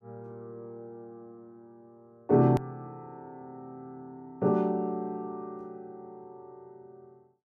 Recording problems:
hard cut with a click; at 2.5 s

